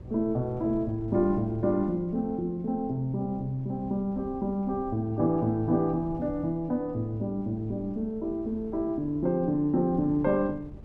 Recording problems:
wind on the microphone; below 200 Hz, SNR 18 dB

